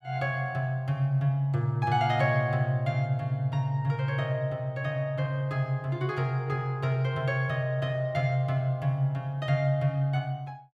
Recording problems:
none

